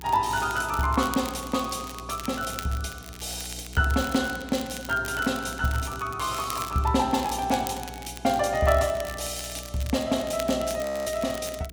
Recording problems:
electrical hum; 60 Hz, harmonics up to 480 Hz, SNR 17 dB
crackling; vinyl, SNR 14 dB
audio freezing; at 11 s

